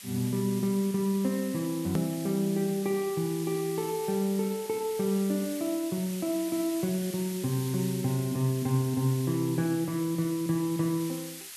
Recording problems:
background hiss; SNR 12 dB
hard cut with a click; at 2 s

